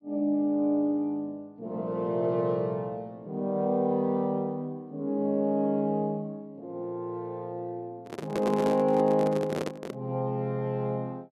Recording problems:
microphone handling noise; from 8 to 10 s; peak 0 dB vs average level

